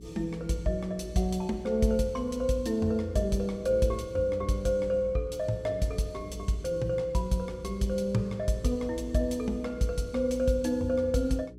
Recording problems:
electrical hum; 60 Hz, harmonics up to 420 Hz, SNR 19 dB

